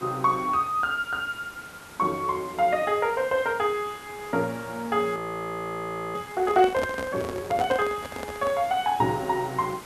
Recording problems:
background hiss; slope -4 dB per octave, SNR 18 dB
audio freezing; at 5 s for 1 s
microphone handling noise; from 6.5 to 8.5 s; peak -2 dB vs average level

